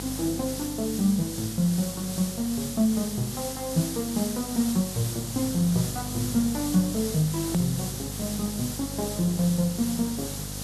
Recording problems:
mains hum; 50 Hz, harmonics up to 1.1 kHz, SNR 12 dB
background hiss; SNR 7 dB
click at an edit; at 7.5 s

